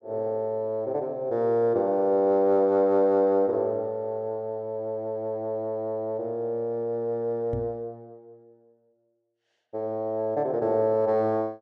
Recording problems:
microphone bump; at 7.5 s; peak -4 dB vs average level

